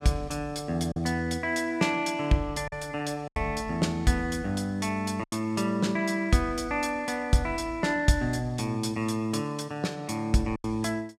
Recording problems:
packet loss; 3% of the sound replaced, filled with silence

